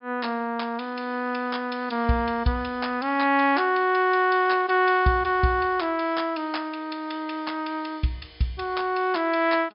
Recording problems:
low-pass filter; nothing above 5.5 kHz

